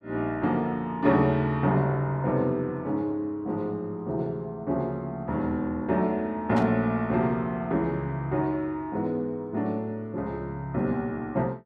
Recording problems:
static burst; at 6.5 s; peak -9 dB vs average level

